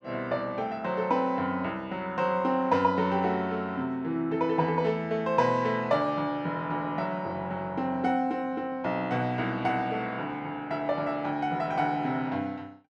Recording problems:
none

